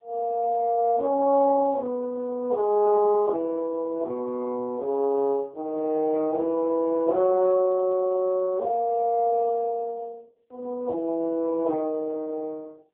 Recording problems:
phone line; 260 Hz to 2 kHz, AMR-NB

